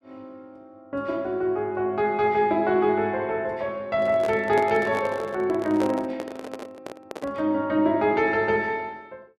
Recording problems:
microphone handling noise; from 4 to 7.5 s; peak -3 dB vs average level

